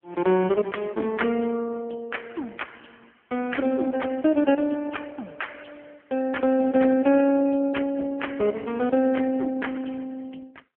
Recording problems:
telephone audio; 190 Hz to 3.3 kHz, AMR-NB

